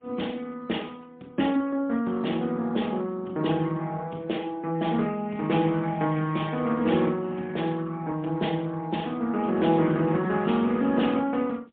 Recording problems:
telephone audio; 86 Hz to 3.6 kHz, AMR-NB, then MP3

